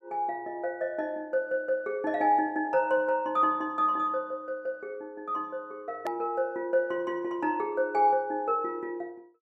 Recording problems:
edit click; at 6 s

